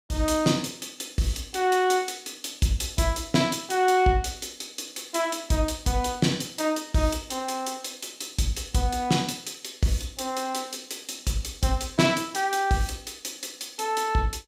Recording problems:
none

